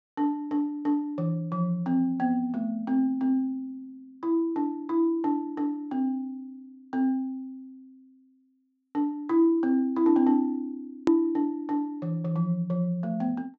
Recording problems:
low-pass filter; nothing above 8 kHz
hard cut with a click; at 11 s

